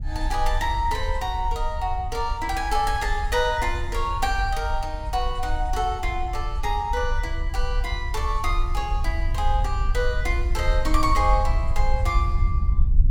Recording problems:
rumble; below 60 Hz, SNR 1 dB

